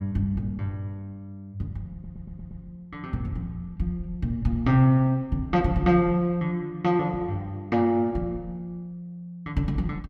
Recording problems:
stutter; at 2 s

